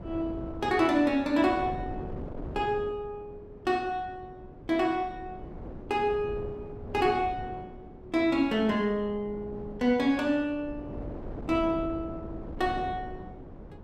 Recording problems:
wind on the microphone; below 390 Hz, SNR 13 dB

